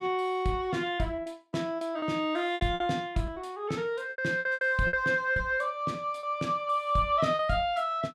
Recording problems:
packet loss; 9% of the sound replaced, filled with repeated pitch periods

